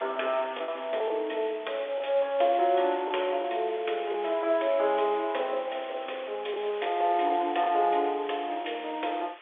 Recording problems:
phone line; 340 Hz to 3.5 kHz, G.711
background hiss; SNR 18 dB
packet loss; 3% of the sound replaced, filled with the last packet

